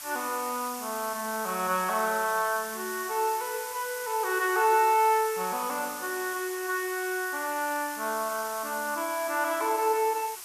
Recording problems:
hiss; SNR 9 dB

